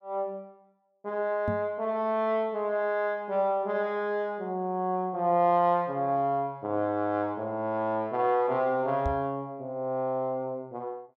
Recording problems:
knock on the microphone; at 1.5 s and at 9 s; peak 0 dB vs average level

